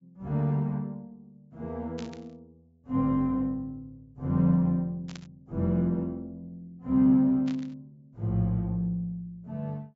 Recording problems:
low-pass filter; nothing above 8 kHz
burst of static; at 2 s, at 5 s and at 7.5 s; peak -12 dB vs average level

